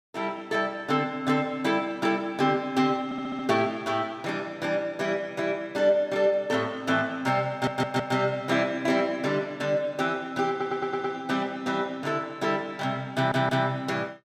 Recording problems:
stutter; 4 times, first at 3 s

